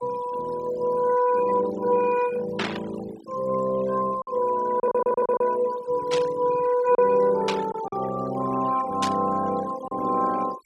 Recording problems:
denoising artefacts; signal-to-artefact ratio 18 dB
lost packets; 2% of the sound replaced, filled with silence
burst of static; 4 times, first at 2.5 s; peak +1 dB vs average level
stutter; at 5 s

